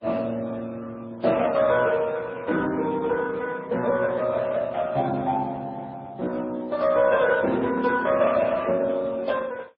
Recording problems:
lossy codec; Speex, then MP3, log-spectral distance 4 dB

